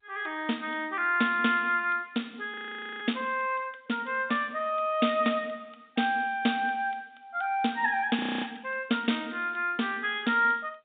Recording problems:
telephone audio; 150 Hz to 3.7 kHz, G.711
audio freezing; at 2.5 s and at 8 s

